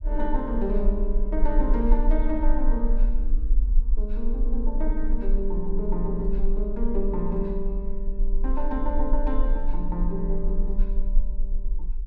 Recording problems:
low-frequency rumble; below 34 Hz, strongest tone 20 Hz, SNR -2 dB

